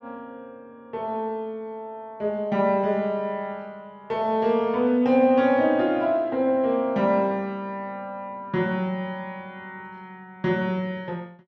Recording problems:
none

